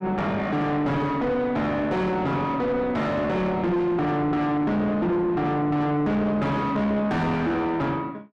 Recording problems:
distorted audio; soft clipping, signal-to-distortion ratio 6 dB

